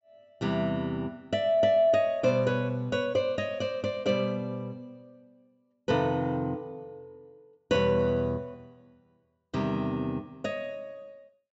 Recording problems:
low-pass filter; nothing above 8 kHz

